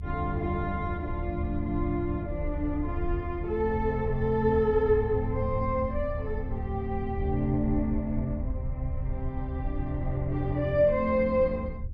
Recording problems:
rumble; below 76 Hz, SNR 7 dB

